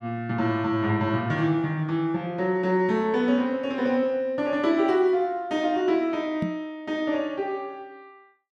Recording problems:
microphone thump; at 6.5 s; peak 0 dB vs average level

